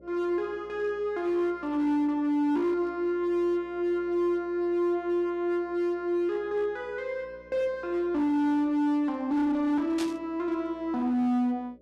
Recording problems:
distorted audio; hard clipping, signal-to-distortion ratio 11 dB
hum; 60 Hz, harmonics up to 600 Hz, SNR 27 dB
static burst; at 10 s; peak -5 dB vs average level

